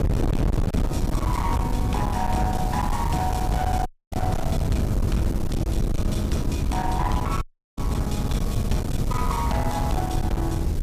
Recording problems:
distortion; hard clipping, signal-to-distortion ratio 6 dB
background hiss; slope 0 dB per octave, SNR 14 dB
wind noise; below 160 Hz, SNR -1 dB
audio cutting out; at 4 s and at 7.5 s

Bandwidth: 15 kHz